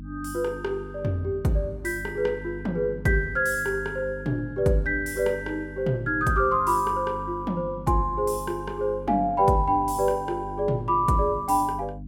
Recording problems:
hum; 50 Hz, harmonics up to 300 Hz, SNR 15 dB

